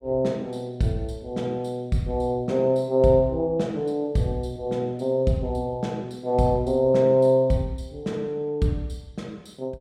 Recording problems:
none

